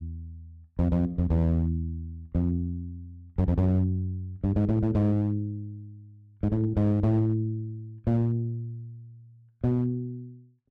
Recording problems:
distorted audio; hard clipping, uneven, signal-to-distortion ratio 10 dB

